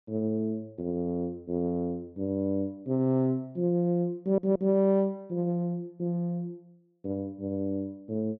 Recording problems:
stutter; at 4 s

